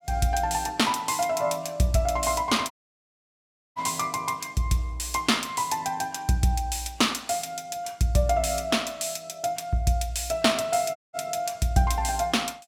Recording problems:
audio cutting out; at 2.5 s for 1 s and at 11 s

